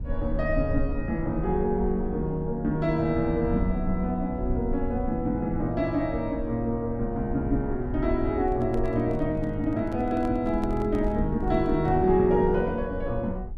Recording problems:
rumble; below 68 Hz, SNR 9 dB
microphone handling noise; from 8.5 to 12 s; peak -9 dB vs average level

